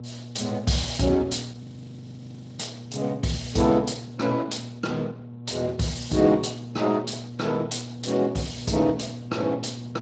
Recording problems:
lossy compression; Opus, then Speex, log-spectral distance 7 dB, nothing above 7.8 kHz
hum; 60 Hz, harmonics up to 600 Hz, SNR 12 dB
audio freezing; at 1.5 s for 1 s

